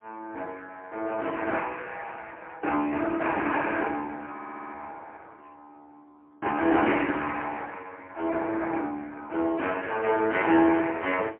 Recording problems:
telephone audio; 240 Hz to 3.2 kHz, AMR-NB, then MP3
stutter; at 4.5 s

